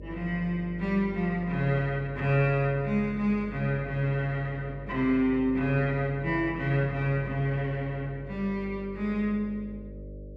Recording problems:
hum; 50 Hz, harmonics up to 600 Hz, SNR 14 dB

